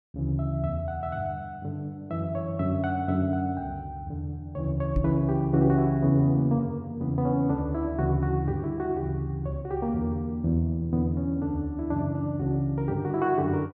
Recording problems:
microphone thump; at 5 s; peak +4 dB vs average level

